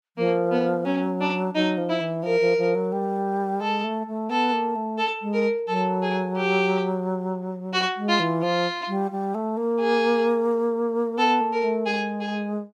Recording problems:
none

